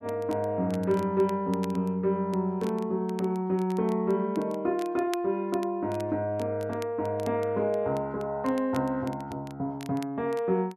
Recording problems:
crackling; vinyl, SNR 22 dB

